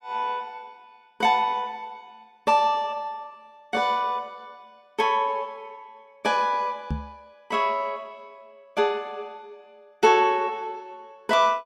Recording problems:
microphone thump; at 7 s; peak -1 dB vs average level

